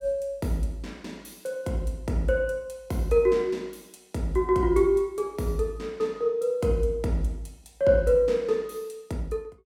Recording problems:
none

